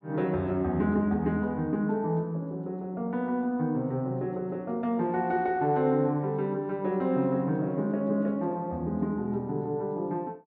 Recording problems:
none

